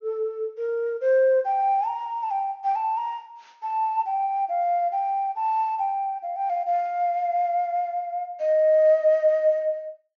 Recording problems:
treble cut off; nothing above 6.8 kHz

